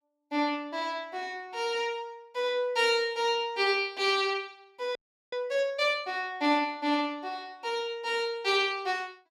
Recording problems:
frozen audio; at 5 s

